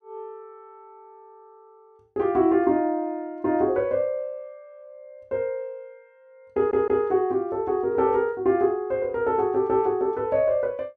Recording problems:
audio stuttering; at 6.5 s

